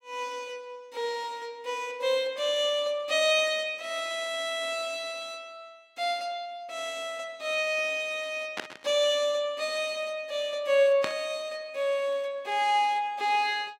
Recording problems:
static burst; at 8.5 s and at 11 s; peak +1 dB vs average level

